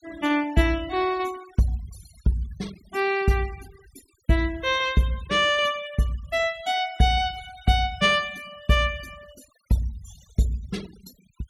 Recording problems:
noise reduction artefacts; signal-to-artefact ratio 22 dB

